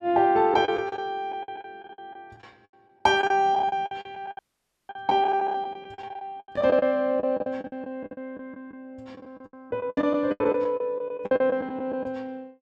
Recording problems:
packet loss; 18% of the sound replaced, filled with the last packet
dropout; at 4.5 s for 0.5 s

